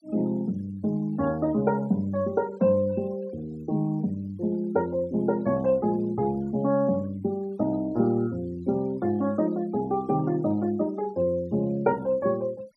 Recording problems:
noise reduction artefacts; signal-to-artefact ratio 27 dB

